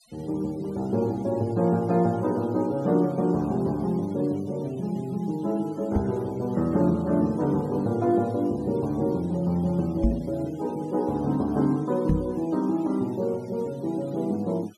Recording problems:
noise reduction artefacts; signal-to-artefact ratio 27 dB
microphone bump; at 6 s, at 10 s and at 12 s; peak +6 dB vs average level

